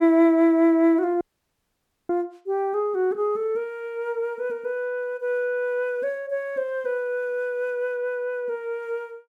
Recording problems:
audio cutting out; at 1 s for 1 s

